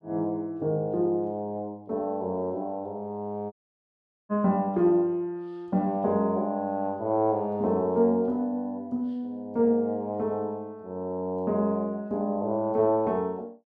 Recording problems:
audio cutting out; at 3.5 s for 1 s

